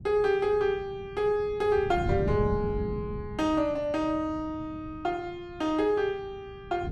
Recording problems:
wind on the microphone; below 190 Hz, SNR 9 dB

